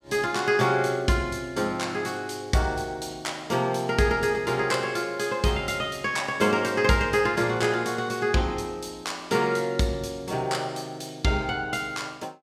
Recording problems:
none

